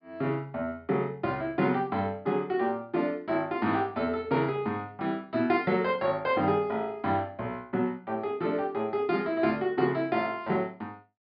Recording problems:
treble cut off; nothing above 5.5 kHz

